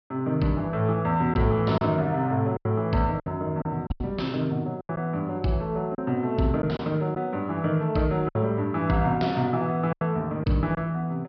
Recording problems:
treble cut off; nothing above 5.5 kHz
packet loss; 6% of the sound replaced, filled with silence

